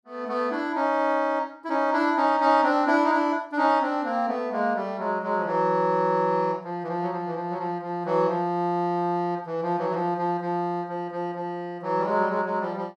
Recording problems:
none

